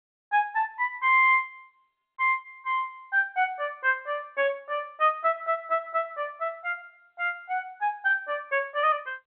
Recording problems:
phone line; 300 Hz to 3.5 kHz, G.711

